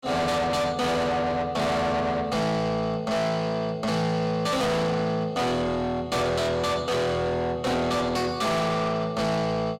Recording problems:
distortion; soft clipping, signal-to-distortion ratio 6 dB

